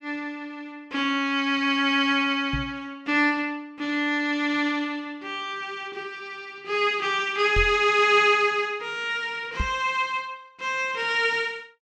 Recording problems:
knock on the microphone; at 2.5 s, at 7.5 s and at 9.5 s; peak -1 dB vs average level

